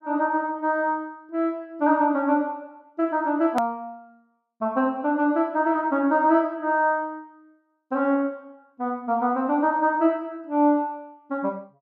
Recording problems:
edit click; at 3.5 s

